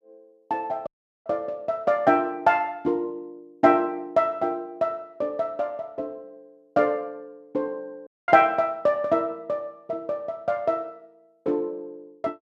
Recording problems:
dropout; at 1 s and at 8 s

